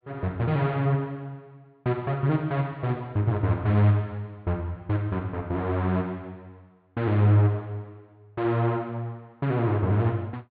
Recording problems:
low-pass filter; nothing above 4.8 kHz

